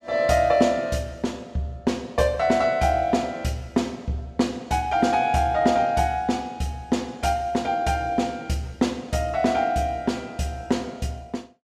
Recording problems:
none

